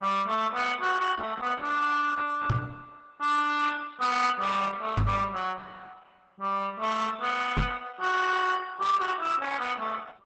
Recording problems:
codec artefacts; Opus, log-spectral distance 4 dB, nothing above 8.2 kHz
distortion; hard clipping, signal-to-distortion ratio 12 dB
microphone bump; at 2.5 s, at 5 s and at 7.5 s; peak +5 dB vs average level

